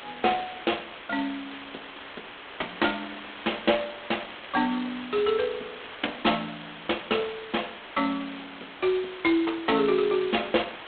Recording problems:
phone line; 240 Hz to 3.5 kHz, G.726
background hiss; SNR 13 dB

